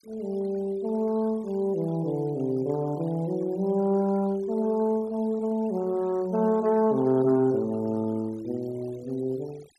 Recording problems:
denoising artefacts; signal-to-artefact ratio 26 dB

